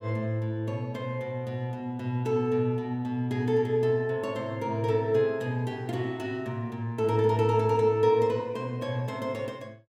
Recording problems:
none

